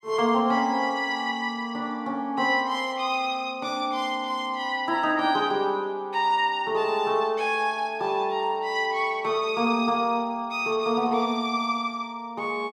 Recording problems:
none

